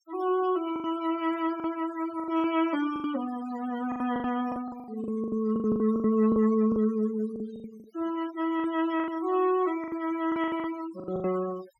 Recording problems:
noise reduction artefacts; signal-to-artefact ratio 15 dB
packet loss; 15% of the sound replaced, filled with the last packet

